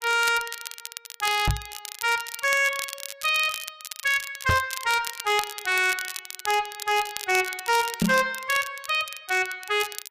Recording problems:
distortion; hard clipping, uneven, signal-to-distortion ratio 11 dB
crackle; vinyl, SNR 11 dB
microphone bump; at 1.5 s, at 4.5 s and at 8 s; peak +4 dB vs average level

